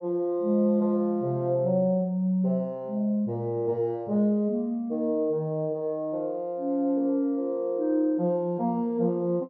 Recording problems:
none

